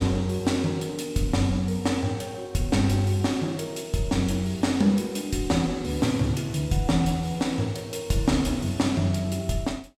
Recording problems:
none

